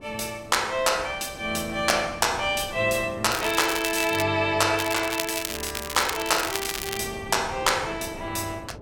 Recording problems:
wind on the microphone; below 500 Hz, SNR 18 dB
crackling; at 3.5 s and from 5 to 7 s; loose cable, SNR 6 dB

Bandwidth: 17 kHz